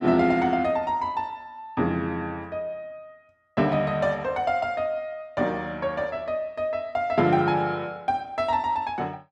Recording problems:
none

